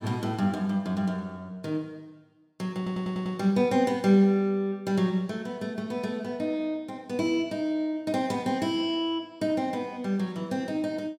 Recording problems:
audio stuttering; at 3 s

